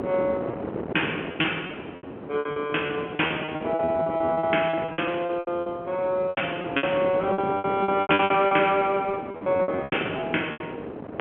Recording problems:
phone line; 240 Hz to 3.3 kHz, G.711
wind noise; below 600 Hz, SNR 9 dB
packet loss; 20% of the sound replaced, filled with repeated pitch periods

